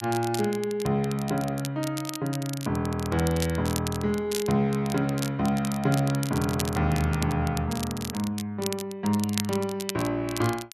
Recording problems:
crackling; vinyl, SNR 11 dB

